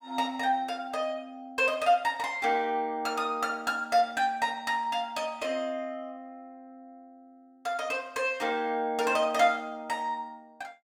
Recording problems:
none

